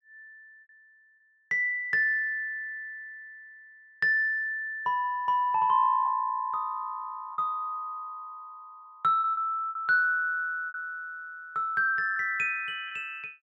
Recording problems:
lost packets; 3% of the sound replaced, filled with repeated pitch periods

